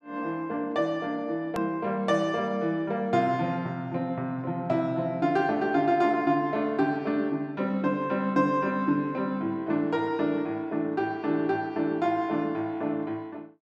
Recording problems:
click at an edit; at 1.5 s

